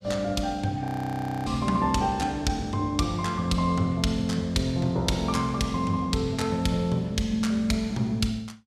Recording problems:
frozen audio; at 1 s for 0.5 s

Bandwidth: 15 kHz